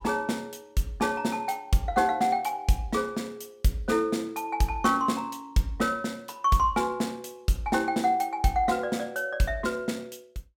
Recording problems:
none

